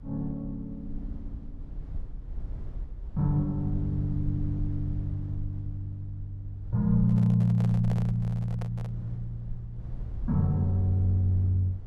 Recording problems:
low-frequency rumble; below 66 Hz, SNR 12 dB
microphone handling noise; from 7 to 9 s; peak -8 dB vs average level

